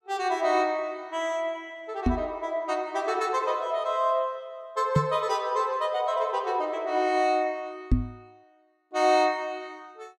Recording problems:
microphone bump; at 2 s, at 5 s and at 8 s; peak +8 dB vs average level

